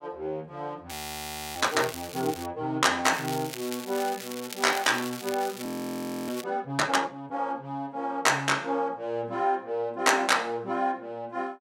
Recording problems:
crackle; from 1 to 2.5 s and from 3 to 6.5 s; loose cable, SNR 11 dB
audio freezing; at 1 s for 0.5 s and at 5.5 s for 0.5 s

